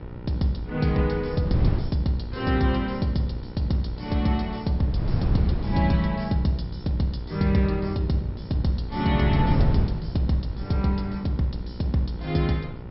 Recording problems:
low-pass filter; nothing above 5.5 kHz
hum; 60 Hz, harmonics up to 1.9 kHz, SNR 17 dB
wind on the microphone; below 170 Hz, SNR 6 dB

